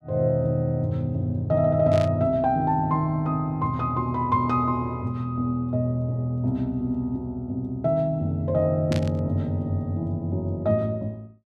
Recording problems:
burst of static; at 2 s and at 9 s; peak -6 dB vs average level

